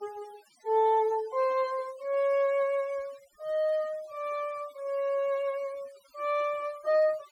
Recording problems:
denoising artefacts; signal-to-artefact ratio 24 dB

